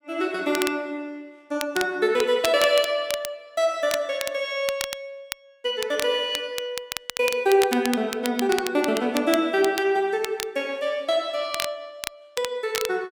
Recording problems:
crackling; vinyl, SNR 9 dB

